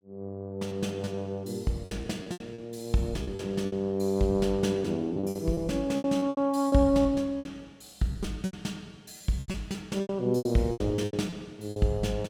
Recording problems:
lost packets; 14% of the sound replaced, filled with repeated pitch periods

